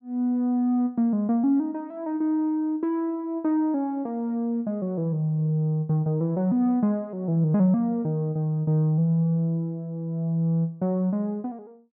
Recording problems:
none

